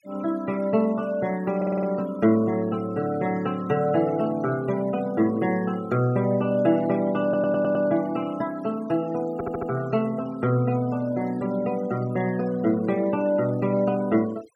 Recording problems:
noise reduction artefacts; signal-to-artefact ratio 20 dB
stutter; at 1.5 s, at 7 s and at 9.5 s

